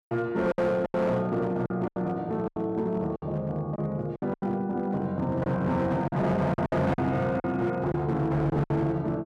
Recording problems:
distortion; hard clipping, uneven, signal-to-distortion ratio 11 dB
packet loss; 10% of the sound replaced, filled with silence

